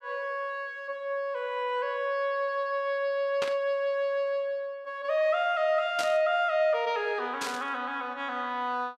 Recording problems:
burst of static; at 3.5 s, at 6 s and at 7.5 s; peak -1 dB vs average level

